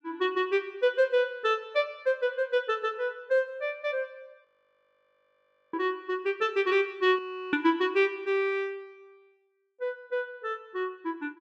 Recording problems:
audio freezing; at 4.5 s for 1.5 s and at 7 s

